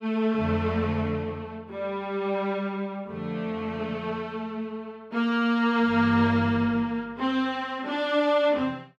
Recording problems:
none

